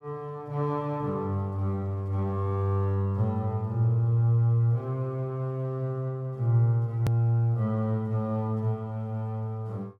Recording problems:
hard cut with a click; at 7 s

